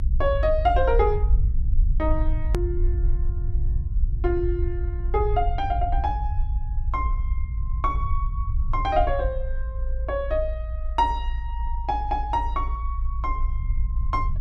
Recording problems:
low-frequency rumble; below 58 Hz, SNR 0 dB
hard cut with a click; at 2.5 s

